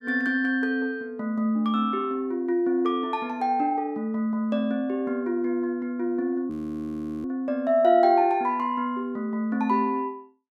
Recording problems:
audio freezing; at 6.5 s for 0.5 s

